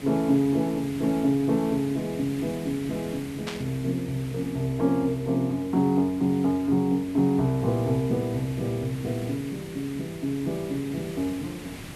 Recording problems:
hiss; SNR 15 dB
burst of static; at 3.5 s; peak -4 dB vs average level

